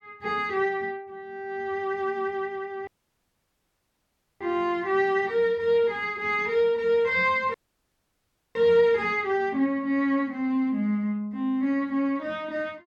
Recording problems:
dropout; at 3 s for 1.5 s and at 7.5 s for 1 s

